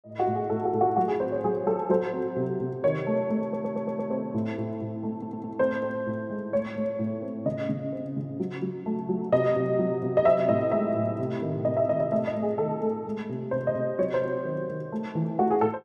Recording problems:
stutter; at 3.5 s and at 5 s

